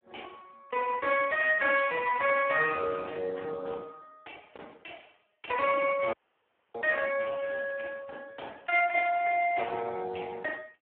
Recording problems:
telephone audio; 320 Hz to 3.3 kHz, Speex
dropout; at 6 s for 0.5 s

